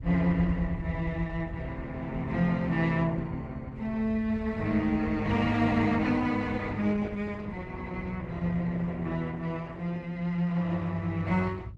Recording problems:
lossy compression; Opus, log-spectral distance 2 dB
low-frequency rumble; below 100 Hz, SNR 11 dB

